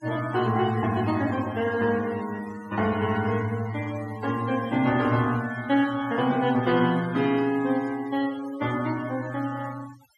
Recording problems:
noise reduction artefacts; signal-to-artefact ratio 18 dB

